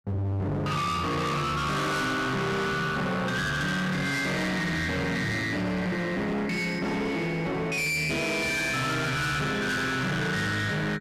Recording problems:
distortion; hard clipping, signal-to-distortion ratio 6 dB

